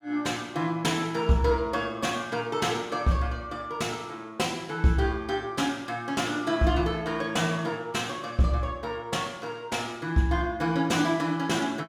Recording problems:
none

